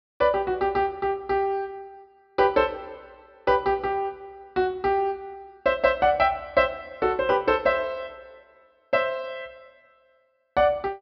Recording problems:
treble cut off; nothing above 5.5 kHz

